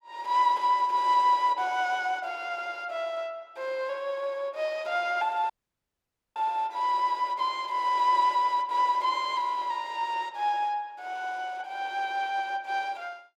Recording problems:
dropout; at 5.5 s for 1 s

